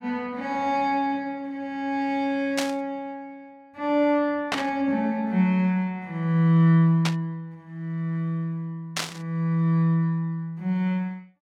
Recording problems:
burst of static; 4 times, first at 2.5 s; peak +2 dB vs average level

